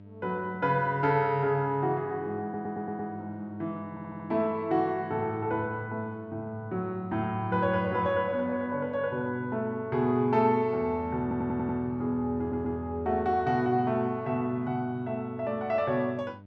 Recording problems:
mains hum; 50 Hz, harmonics up to 900 Hz, SNR 20 dB
stutter; 4 times, first at 2.5 s

